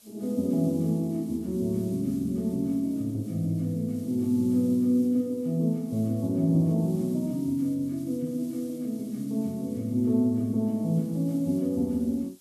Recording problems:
hiss; SNR 25 dB

